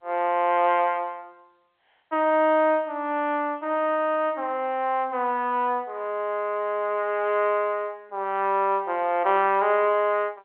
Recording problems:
telephone audio; 260 Hz to 3.4 kHz, G.711

